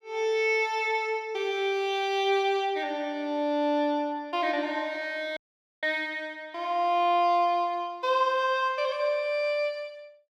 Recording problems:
dropout; at 5.5 s

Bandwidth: 16.5 kHz